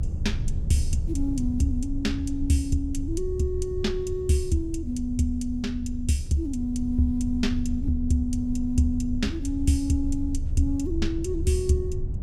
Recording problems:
electrical hum; 50 Hz, harmonics up to 600 Hz, SNR 22 dB
rumble; below 78 Hz, strongest tone 24 Hz, SNR 5 dB

